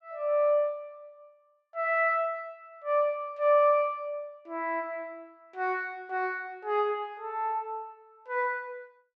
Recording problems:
none

